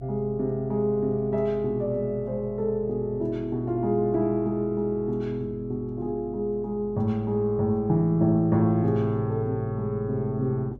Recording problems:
hum; 50 Hz, harmonics up to 600 Hz, SNR 21 dB

